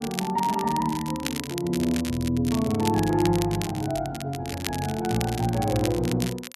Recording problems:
crackling; vinyl, SNR 10 dB

